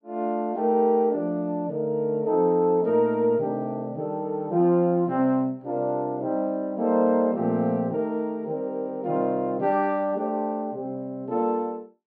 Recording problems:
none

